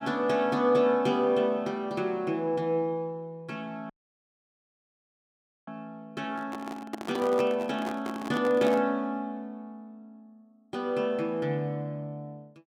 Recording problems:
audio cutting out; at 4 s for 2 s
handling noise; from 6.5 to 9 s; peak -2 dB vs average level

